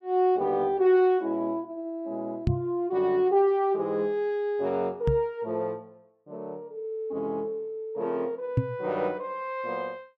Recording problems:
microphone bump; at 2.5 s, at 5 s and at 8.5 s; peak +7 dB vs average level

